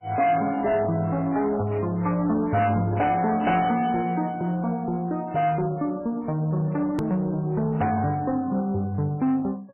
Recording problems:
codec artefacts; MP3, log-spectral distance 2 dB, nothing above 13.1 kHz
distortion; soft clipping, signal-to-distortion ratio 10 dB
edit click; at 7 s

